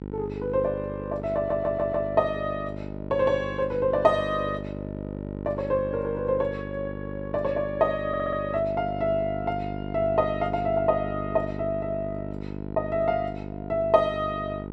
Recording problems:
electrical hum; 50 Hz, harmonics up to 1 kHz, SNR 8 dB
stutter; at 1.5 s and at 8 s

